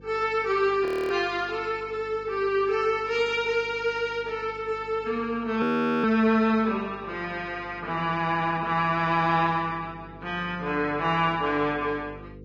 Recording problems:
lossy compression; Vorbis, log-spectral distance 2 dB, nothing above 19.5 kHz
hum; 50 Hz, harmonics up to 500 Hz, SNR 22 dB
frozen audio; at 1 s and at 5.5 s

